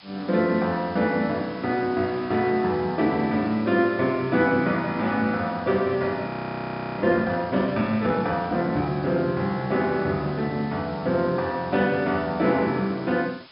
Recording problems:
treble cut off; nothing above 5.5 kHz
hiss; SNR 23 dB
audio freezing; at 6.5 s for 0.5 s

